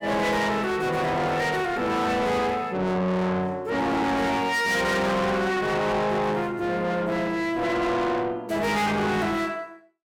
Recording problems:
distortion; soft clipping, signal-to-distortion ratio 7 dB

